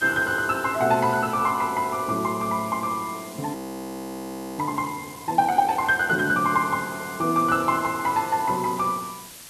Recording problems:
background hiss; slope 0 dB per octave, SNR 17 dB
frozen audio; at 3.5 s for 1 s

